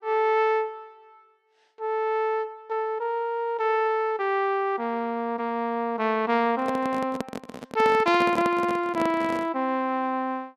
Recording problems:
handling noise; from 6.5 to 9.5 s; peak -1 dB vs average level

